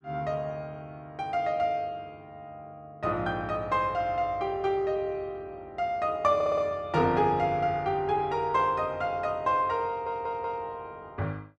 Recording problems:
stutter; at 6.5 s and at 10 s

